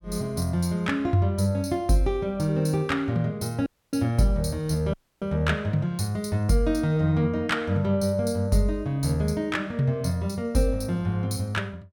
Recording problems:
dropout; at 3.5 s and at 5 s

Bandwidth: 18 kHz